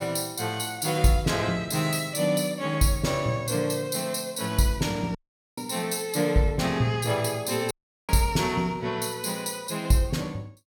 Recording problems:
dropout; at 5 s and at 7.5 s

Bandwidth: 17 kHz